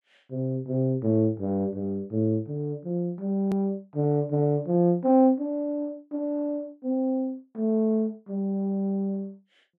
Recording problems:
hard cut with a click; at 3.5 s

